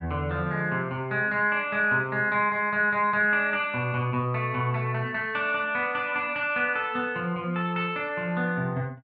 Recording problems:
low-pass filter; nothing above 5.6 kHz

